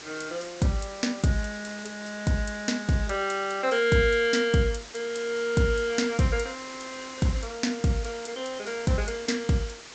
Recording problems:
treble missing; nothing above 8 kHz
hiss; slope -1 dB per octave, SNR 15 dB

